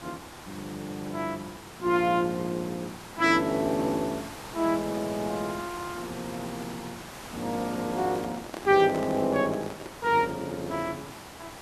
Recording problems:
background hiss; SNR 13 dB
handling noise; from 8 to 10 s; peak -5 dB vs average level

